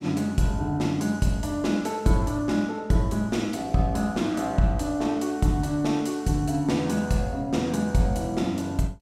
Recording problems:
none

